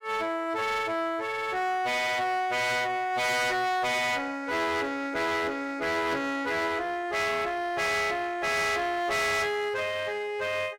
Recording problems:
distorted audio; hard clipping, uneven, signal-to-distortion ratio 6 dB

